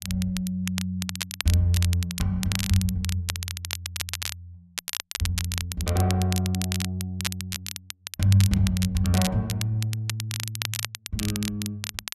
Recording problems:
crackle; vinyl, SNR 6 dB

